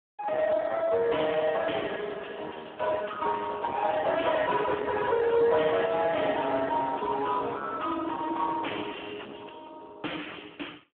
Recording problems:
phone line; 220 Hz to 2.8 kHz, Speex
distorted audio; soft clipping, signal-to-distortion ratio 10 dB

